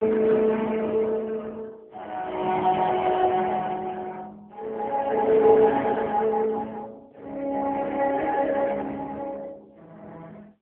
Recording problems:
phone line; 240 Hz to 2.9 kHz, AMR-NB

